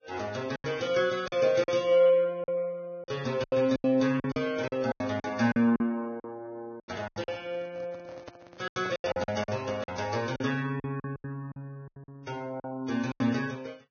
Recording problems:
lossy compression; Vorbis, log-spectral distance 3 dB, nothing above 6.5 kHz
lost packets; 13% of the sound replaced, filled with silence
handling noise; from 7 to 10 s; peak -10 dB vs average level

